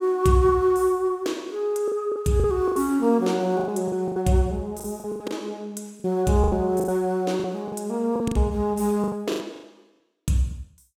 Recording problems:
lost packets; 12% of the sound replaced, filled with the last packet

